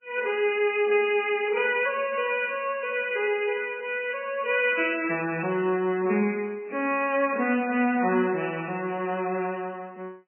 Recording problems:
lossy codec; MP3, log-spectral distance 4 dB, nothing above 2.5 kHz
static burst; at 2.5 s and at 7 s; peak -16 dB vs average level

